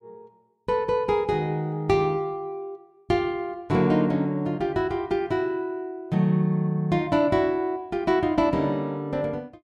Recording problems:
none

